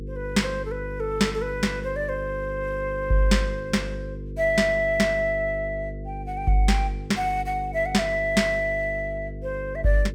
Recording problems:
mains hum; 50 Hz, harmonics up to 500 Hz, SNR 10 dB

